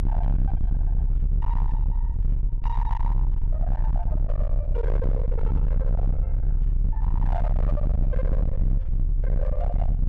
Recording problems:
distortion; hard clipping, uneven, signal-to-distortion ratio 5 dB
rumble; below 60 Hz, strongest tone 34 Hz, SNR -11 dB

